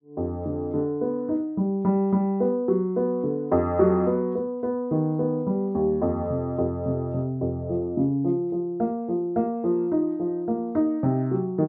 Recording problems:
none

